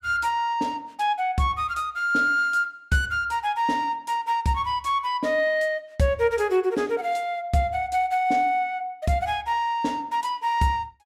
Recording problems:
none

